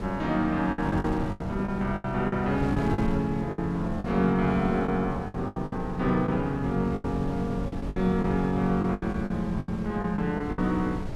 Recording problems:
wind on the microphone; below 250 Hz, SNR 8 dB
lost packets; 12% of the sound replaced, filled with the last packet

